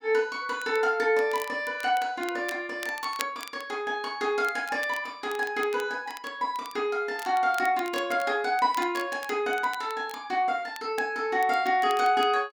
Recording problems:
crackling; vinyl, SNR 18 dB

